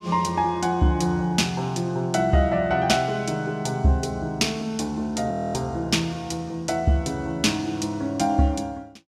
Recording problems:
frozen audio; at 5.5 s

